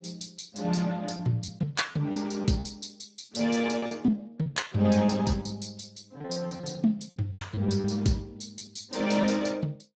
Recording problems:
codec artefacts; Speex, log-spectral distance 8 dB, nothing above 7.3 kHz
packet loss; 10% of the sound replaced, filled with repeated pitch periods

